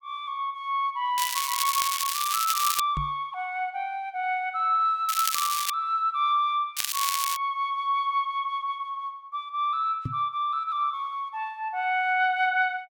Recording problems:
crackling; from 1 to 3 s, at 5 s and at 7 s; loose cable, SNR 1 dB
knock on the microphone; at 3 s and at 10 s; peak -1 dB vs average level

